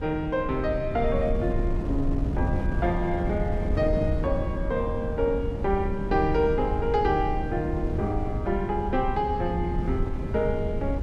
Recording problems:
wind noise; below 150 Hz, SNR 3 dB

